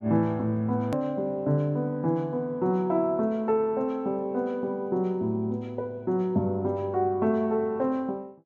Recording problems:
click at an edit; at 1 s

